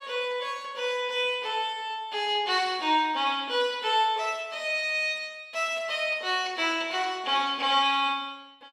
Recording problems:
none

